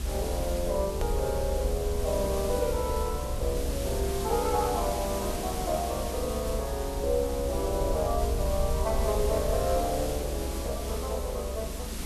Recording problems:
background hiss; SNR 7 dB
low-frequency rumble; below 66 Hz, SNR 4 dB
edit click; at 1 s

